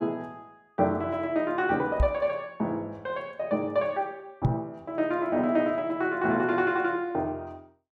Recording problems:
microphone thump; at 2 s and at 4.5 s; peak +7 dB vs average level

